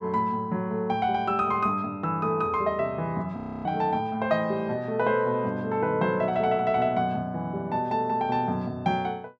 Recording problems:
audio freezing; at 3.5 s

